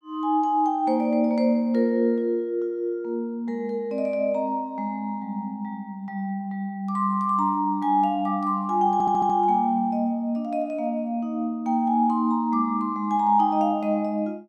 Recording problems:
stutter; at 9 s

